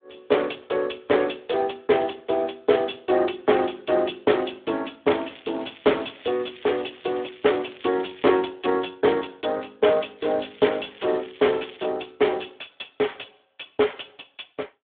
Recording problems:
phone line; 280 Hz to 3.6 kHz, Speex
crackling; from 5 to 8.5 s and from 10 to 12 s; loose cable, SNR 21 dB

